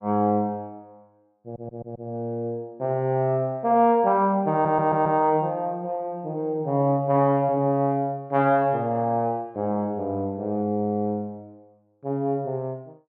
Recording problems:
stutter; at 1.5 s and at 4.5 s

